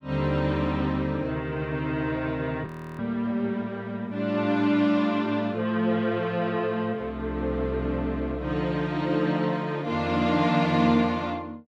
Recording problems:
audio freezing; at 2.5 s

